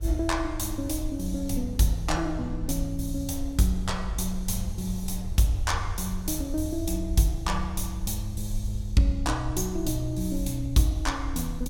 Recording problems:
low-frequency rumble; below 66 Hz, SNR 7 dB
wind noise; below 480 Hz, SNR 24 dB

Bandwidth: 17.5 kHz